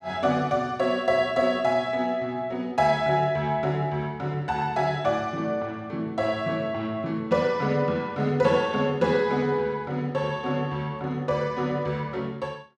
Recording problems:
none

